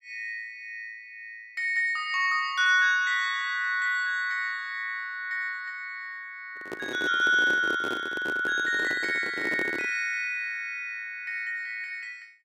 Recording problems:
handling noise; from 6.5 to 10 s; peak -4 dB vs average level

